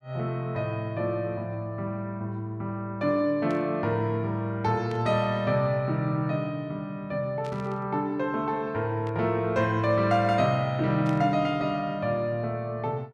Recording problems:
static burst; 5 times, first at 3.5 s; peak -13 dB vs average level

